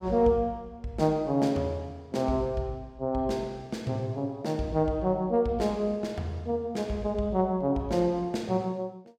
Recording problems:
none

